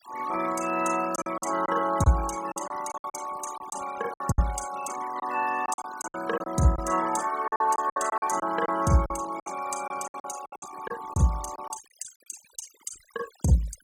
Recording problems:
noise reduction artefacts; signal-to-artefact ratio 15 dB
packet loss; 11% of the sound replaced, filled with silence

